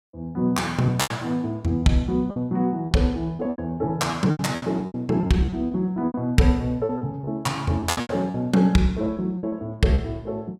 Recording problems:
lost packets; 13% of the sound replaced, filled with repeated pitch periods

